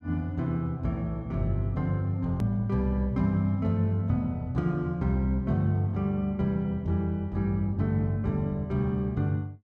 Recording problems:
click at an edit; at 2.5 s

